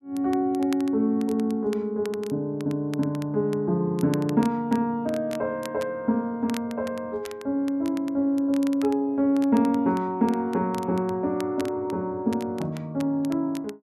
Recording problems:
crackle; vinyl, SNR 21 dB

